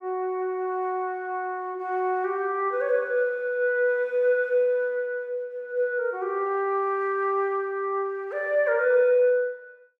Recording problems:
none

